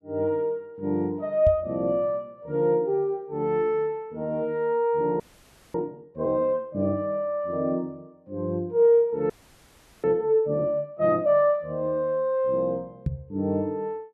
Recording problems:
microphone thump; at 1.5 s and at 13 s; peak +2 dB vs average level
frozen audio; at 5 s for 0.5 s and at 9.5 s for 0.5 s

